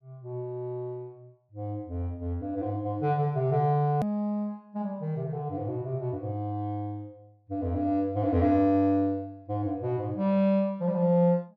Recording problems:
treble missing; nothing above 8 kHz
click at an edit; at 4 s

